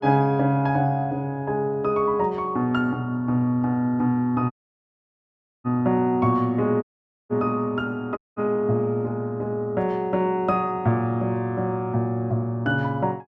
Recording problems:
dropout; at 4.5 s for 1 s, at 7 s and at 8 s

